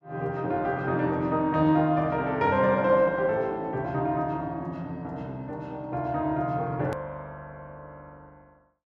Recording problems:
click at an edit; at 7 s

